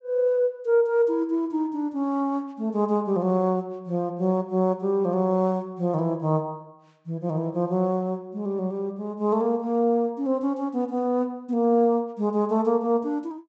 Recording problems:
treble cut off; nothing above 8 kHz

